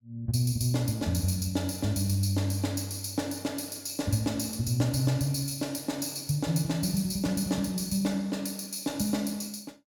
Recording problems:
none

